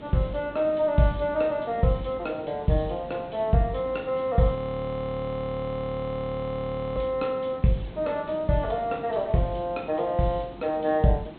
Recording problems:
treble cut off; nothing above 4 kHz
background hiss; SNR 17 dB
frozen audio; at 4.5 s for 2.5 s

